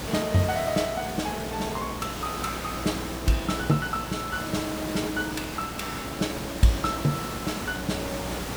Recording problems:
electrical hum; 60 Hz, harmonics up to 600 Hz, SNR 14 dB
background hiss; slope -4 dB per octave, SNR 5 dB
crackle; at 0.5 s, at 1.5 s and from 5 to 7.5 s; loose cable, SNR 25 dB

